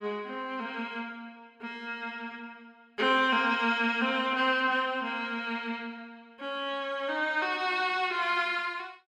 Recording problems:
none

